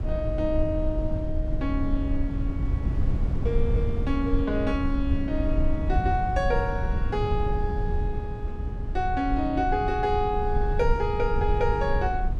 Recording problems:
rumble; below 90 Hz, SNR 1 dB

